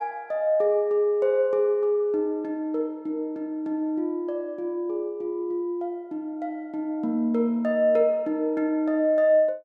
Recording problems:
none

